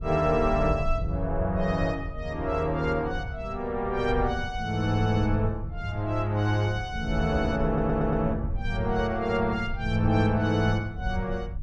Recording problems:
rumble; below 92 Hz, SNR 8 dB
stutter; at 7.5 s

